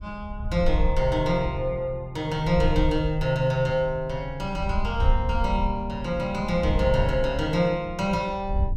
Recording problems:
wind on the microphone; below 70 Hz, SNR 6 dB

